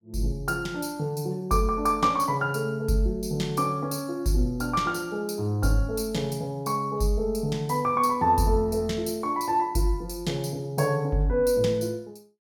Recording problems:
none

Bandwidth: 17 kHz